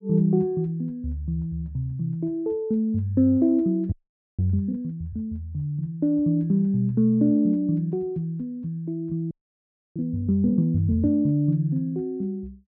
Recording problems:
audio freezing; at 4 s and at 9.5 s for 0.5 s

